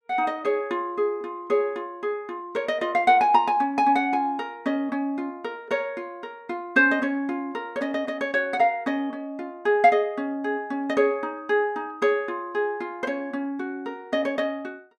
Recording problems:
none

